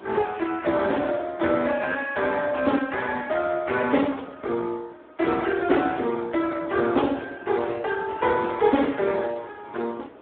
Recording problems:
telephone audio; 240 Hz to 3.6 kHz, Speex
wind on the microphone; below 840 Hz, SNR 23 dB

